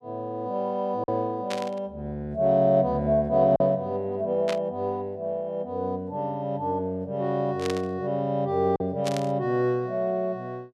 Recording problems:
lost packets; 1.1% of the sound replaced, filled with silence
static burst; 4 times, first at 1.5 s; peak -3 dB vs average level

